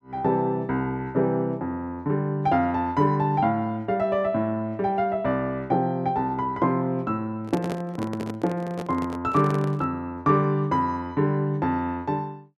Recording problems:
microphone handling noise; from 7.5 to 10 s; peak -1 dB vs average level

